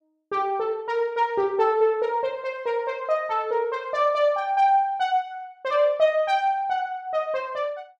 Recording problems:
none

